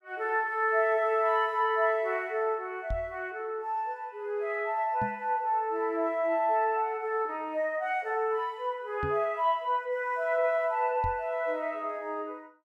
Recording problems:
microphone thump; 4 times, first at 3 s; peak -3 dB vs average level

